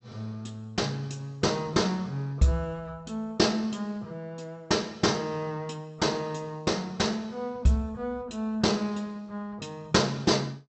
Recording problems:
low-pass filter; nothing above 7.9 kHz

